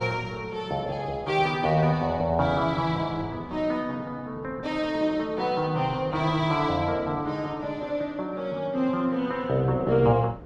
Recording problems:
wind noise; below 480 Hz, SNR 21 dB

